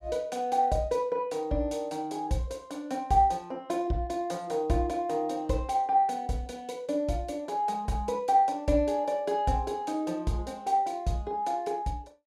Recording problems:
none

